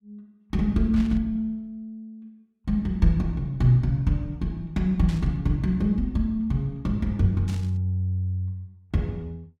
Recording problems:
static burst; at 1 s, at 5 s and at 7.5 s; peak -12 dB vs average level

